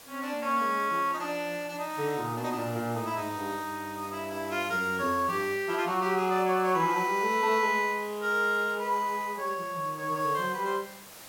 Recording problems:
background hiss; slope -2 dB per octave, SNR 18 dB

